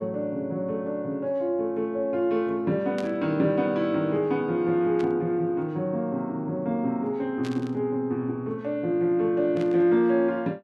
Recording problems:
burst of static; 4 times, first at 3 s; peak -10 dB vs average level

